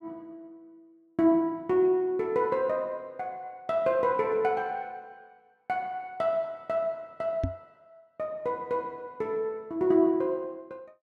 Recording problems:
microphone bump; at 7.5 s; peak +2 dB vs average level

